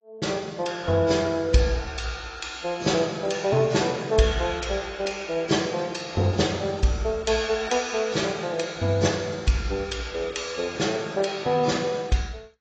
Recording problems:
lossy compression; AAC, log-spectral distance 4 dB, nothing above 7.3 kHz

